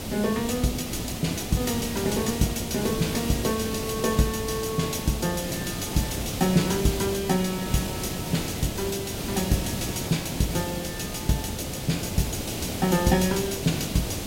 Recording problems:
hiss; SNR 4 dB

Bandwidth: 16 kHz